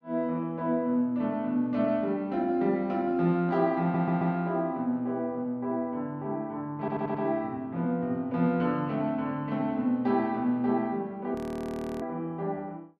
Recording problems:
stutter; at 4 s and at 7 s
frozen audio; at 11 s for 0.5 s

